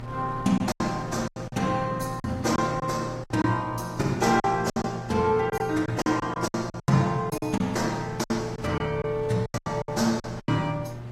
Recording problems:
lossy codec; AAC, log-spectral distance 2 dB, nothing above 13.5 kHz
electrical hum; 60 Hz, harmonics up to 1.2 kHz, SNR 12 dB
wind on the microphone; below 720 Hz, SNR 19 dB
lost packets; 12% of the sound replaced, filled with silence

